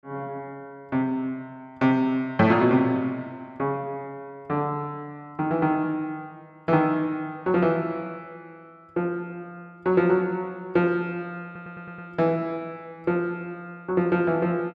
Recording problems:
stutter; at 11 s

